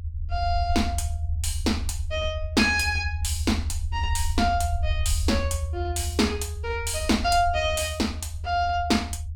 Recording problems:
rumble; below 82 Hz, SNR 4 dB

